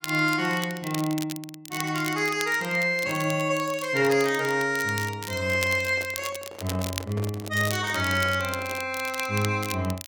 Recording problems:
crackling; vinyl, SNR 12 dB
handling noise; from 5.5 to 9 s; peak -8 dB vs average level

